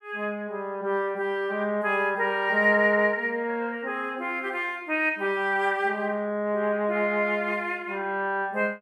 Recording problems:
none

